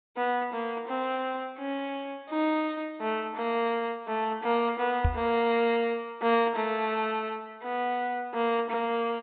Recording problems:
treble missing; nothing above 4 kHz
knock on the microphone; at 5 s; peak +6 dB vs average level

